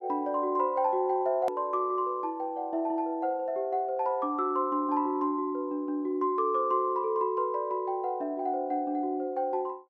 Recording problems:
hard cut with a click; at 1.5 s

